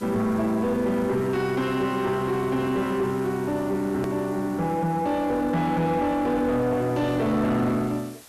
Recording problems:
distorted audio; soft clipping, signal-to-distortion ratio 9 dB
background hiss; slope -4 dB per octave, SNR 21 dB
click at an edit; at 4 s

